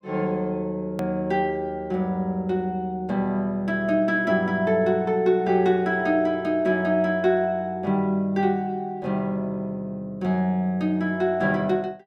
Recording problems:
hard cut with a click; at 1 s

